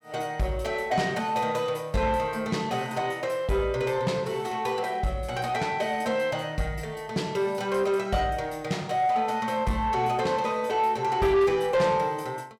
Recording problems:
distorted audio; soft clipping, signal-to-distortion ratio 10 dB

